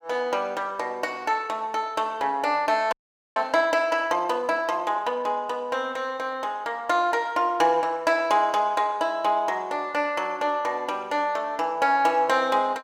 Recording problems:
frozen audio; at 3 s

